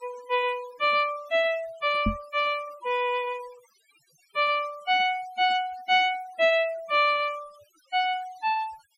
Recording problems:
denoising artefacts; signal-to-artefact ratio 20 dB
microphone thump; at 2 s; peak +3 dB vs average level

